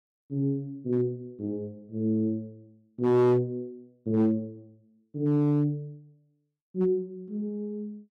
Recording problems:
distorted audio; hard clipping, signal-to-distortion ratio 12 dB

